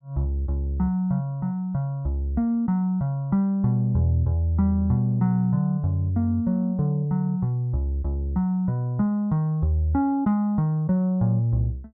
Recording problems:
none

